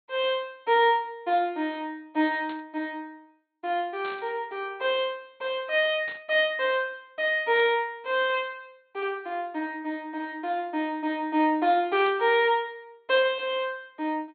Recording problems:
treble cut off; nothing above 4.3 kHz
burst of static; 5 times, first at 2.5 s; peak -12 dB vs average level

